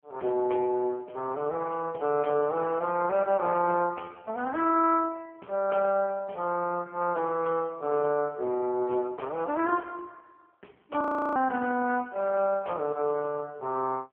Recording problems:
phone line; 280 Hz to 2.6 kHz, AMR-NB
frozen audio; at 11 s

